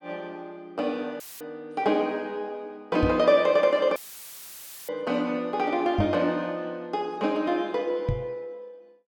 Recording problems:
audio cutting out; at 1 s and at 4 s for 1 s; filled with static
microphone thump; at 3 s, at 6 s and at 8 s; peak +4 dB vs average level

